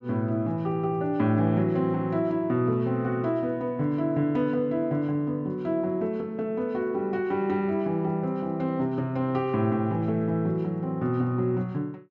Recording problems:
low-pass filter; nothing above 8 kHz

